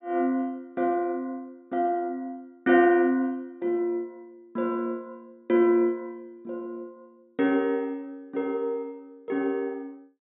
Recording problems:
low-pass filter; nothing above 4 kHz

